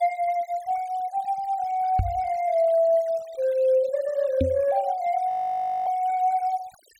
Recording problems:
noise reduction artefacts; signal-to-artefact ratio 26 dB
microphone thump; at 2 s and at 4.5 s; peak +3 dB vs average level
frozen audio; at 5.5 s for 0.5 s

